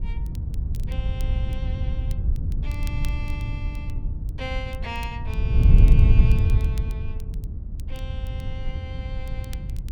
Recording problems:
wind noise; below 94 Hz, SNR -13 dB
crackle; vinyl, SNR 13 dB

